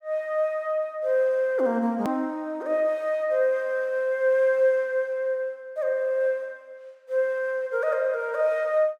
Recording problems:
edit click; at 2 s

